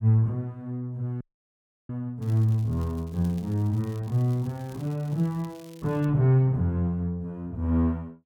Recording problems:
frozen audio; at 1 s for 0.5 s
crackling; from 2 to 6 s; loose cable, SNR 27 dB

